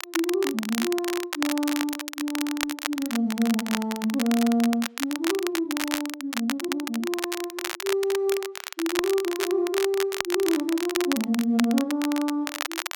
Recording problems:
crackle; vinyl, SNR 5 dB

